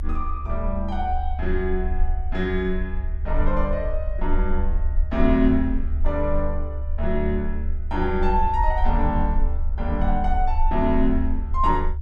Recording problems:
rumble; below 68 Hz, strongest tone 22 Hz, SNR 2 dB

